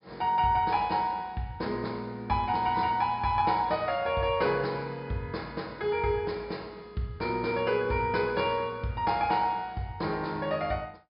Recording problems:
low-pass filter; nothing above 5.5 kHz

